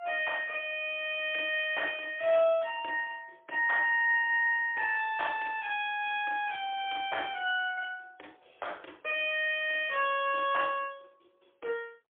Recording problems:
phone line; 300 Hz to 3.5 kHz, AMR-NB, then MP3

